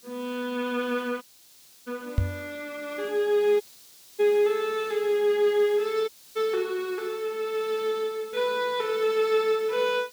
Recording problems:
hiss; SNR 23 dB
dropout; at 1 s for 0.5 s, at 3.5 s for 0.5 s and at 6 s
microphone bump; at 2 s; peak +6 dB vs average level

